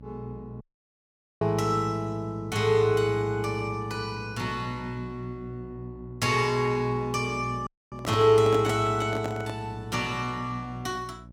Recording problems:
electrical hum; 60 Hz, harmonics up to 600 Hz, SNR 18 dB
dropout; at 0.5 s for 1 s and at 7.5 s
microphone handling noise; from 8 to 9.5 s; peak -1 dB vs average level

